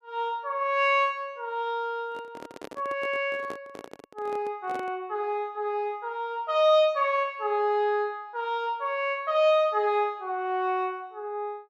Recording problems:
microphone handling noise; from 2 to 5 s; peak -8 dB vs average level

